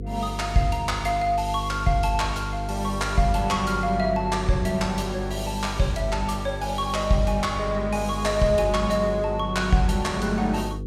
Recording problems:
hum; 50 Hz, harmonics up to 500 Hz, SNR 8 dB

